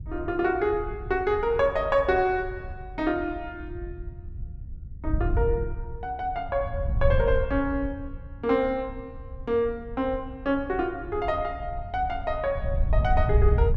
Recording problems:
wind on the microphone; below 86 Hz, SNR 6 dB

